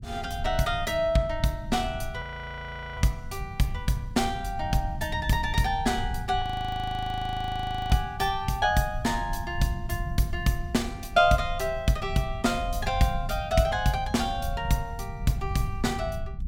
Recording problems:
low-frequency rumble; below 110 Hz, SNR 9 dB
audio freezing; at 2 s for 1 s and at 6.5 s for 1.5 s

